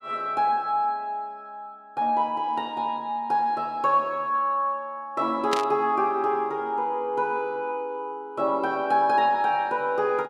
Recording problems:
burst of static; at 5.5 s; peak +1 dB vs average level

